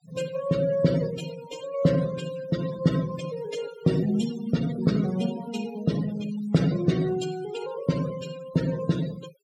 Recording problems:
noise reduction artefacts; signal-to-artefact ratio 14 dB

